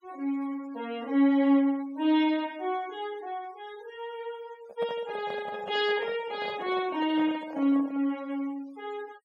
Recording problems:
denoising artefacts; signal-to-artefact ratio 23 dB
handling noise; from 4.5 to 8 s; peak -7 dB vs average level

